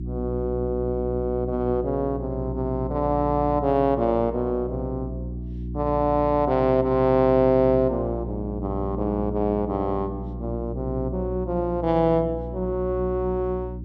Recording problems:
electrical hum; 60 Hz, harmonics up to 360 Hz, SNR 9 dB

